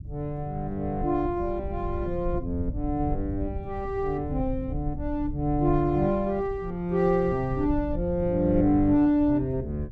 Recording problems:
low-frequency rumble; below 94 Hz, SNR 10 dB

